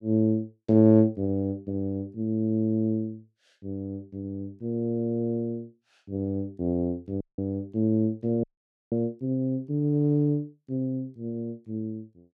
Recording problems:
audio cutting out; at 7 s and at 8.5 s

